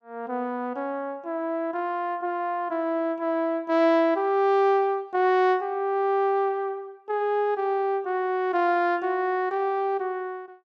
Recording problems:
none

